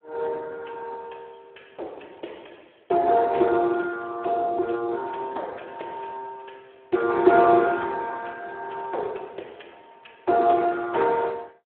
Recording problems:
telephone audio; 300 Hz to 3.2 kHz, Speex

